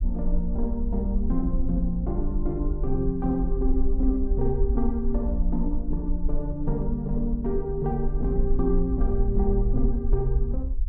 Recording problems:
low-frequency rumble; below 50 Hz, strongest tone 20 Hz, SNR 1 dB

